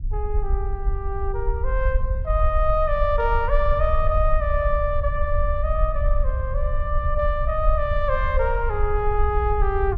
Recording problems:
rumble; below 58 Hz, SNR 1 dB

